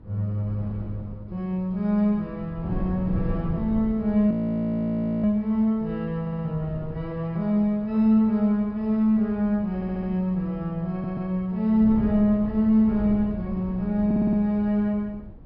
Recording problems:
treble missing; nothing above 5.5 kHz
wind on the microphone; below 190 Hz, SNR 14 dB
frozen audio; at 4.5 s for 1 s
audio stuttering; 4 times, first at 6 s

